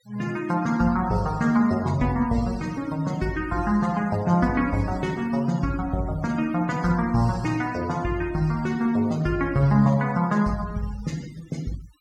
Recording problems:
noise reduction artefacts; signal-to-artefact ratio 21 dB

